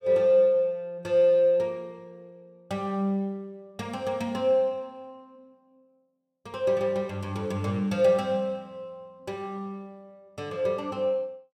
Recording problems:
none

